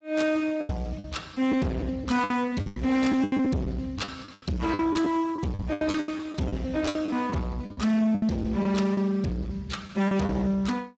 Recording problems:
codec artefacts; Speex, log-spectral distance 3 dB, nothing above 7.6 kHz
distorted audio; hard clipping, signal-to-distortion ratio 7 dB
packet loss; 13% of the sound replaced, filled with the last packet

